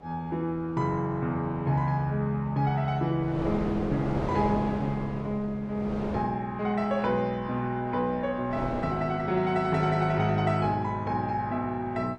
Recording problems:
codec artefacts; Vorbis, log-spectral distance 2 dB
wind on the microphone; below 650 Hz, SNR 7 dB

